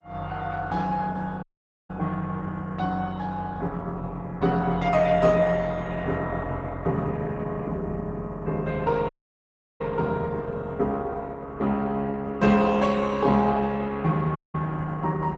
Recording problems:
codec artefacts; Opus, log-spectral distance 3 dB, nothing above 7.6 kHz
audio cutting out; at 1.5 s, at 9 s for 0.5 s and at 14 s

